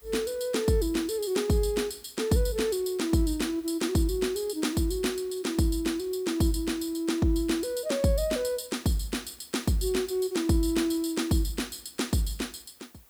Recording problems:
background hiss; slope -2 dB per octave, SNR 27 dB

